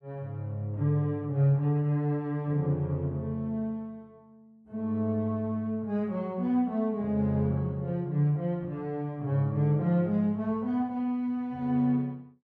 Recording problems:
none

